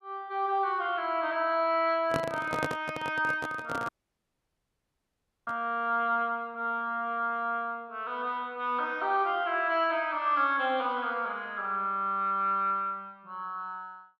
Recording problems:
microphone handling noise; from 2 to 5.5 s; peak +2 dB vs average level
dropout; at 4 s for 1.5 s

